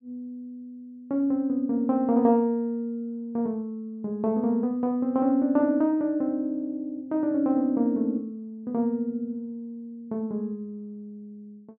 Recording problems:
none

